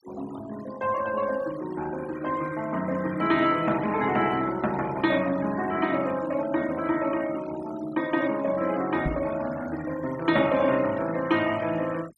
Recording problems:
denoising artefacts; signal-to-artefact ratio 17 dB
knock on the microphone; at 9 s; peak +1 dB vs average level

